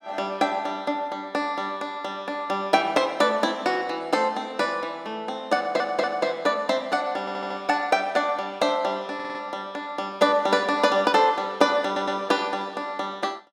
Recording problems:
stutter; 4 times, first at 5.5 s

